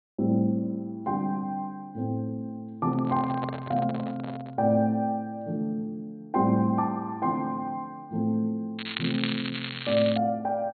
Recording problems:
low-pass filter; nothing above 4.3 kHz
handling noise; from 3 to 4.5 s; peak -4 dB vs average level
crackling; from 9 to 10 s; loose cable, SNR 6 dB

